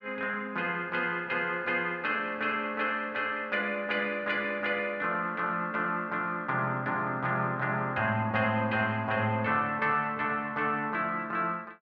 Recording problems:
none

